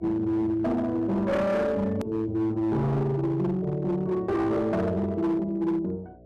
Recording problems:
distortion; hard clipping, signal-to-distortion ratio 11 dB
electrical hum; 60 Hz, harmonics up to 660 Hz, SNR 26 dB
hard cut with a click; at 2 s

